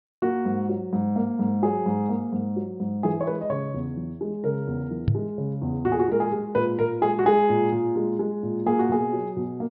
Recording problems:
low-pass filter; nothing above 5.3 kHz
knock on the microphone; at 5 s; peak +6 dB vs average level

